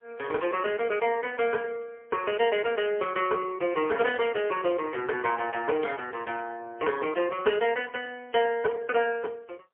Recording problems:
telephone audio; 320 Hz to 3.2 kHz, AMR-NB, then MP3

